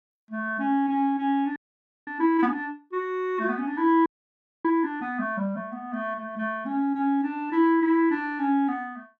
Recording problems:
audio freezing; at 1.5 s for 0.5 s and at 4 s for 0.5 s

